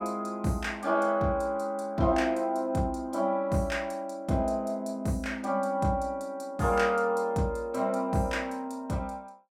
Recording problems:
none

